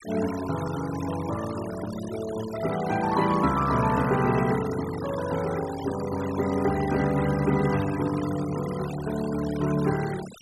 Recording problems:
denoising artefacts; signal-to-artefact ratio 13 dB

